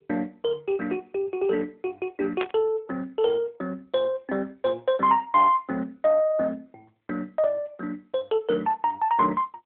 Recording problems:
phone line; 320 Hz to 3.9 kHz, AMR-NB
burst of static; at 2.5 s; peak 0 dB vs average level

